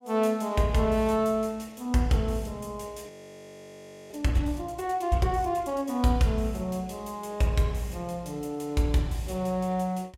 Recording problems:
frozen audio; at 3 s for 1 s

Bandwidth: 16 kHz